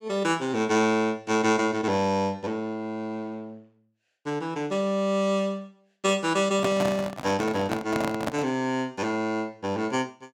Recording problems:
handling noise; from 6.5 to 8.5 s; peak +1 dB vs average level

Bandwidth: 17 kHz